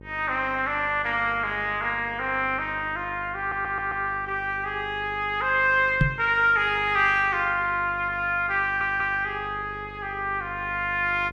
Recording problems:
electrical hum; 50 Hz, harmonics up to 950 Hz, SNR 20 dB
stutter; at 3.5 s and at 8.5 s
microphone thump; at 6 s; peak +6 dB vs average level

